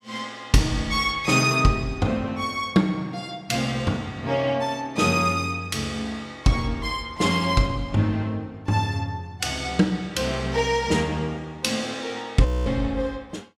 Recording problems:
frozen audio; at 12 s

